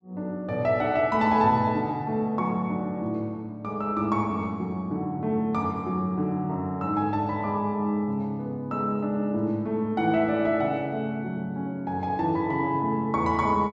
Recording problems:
none

